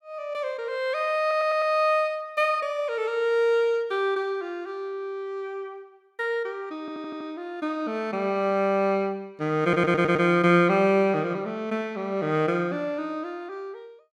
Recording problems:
audio stuttering; at 1 s, at 7 s and at 9.5 s

